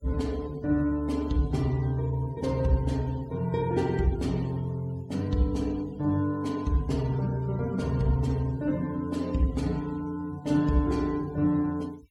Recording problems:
denoising artefacts; signal-to-artefact ratio 23 dB

